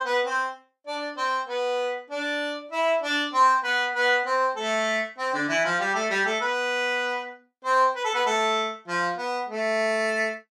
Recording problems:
none

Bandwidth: 14.5 kHz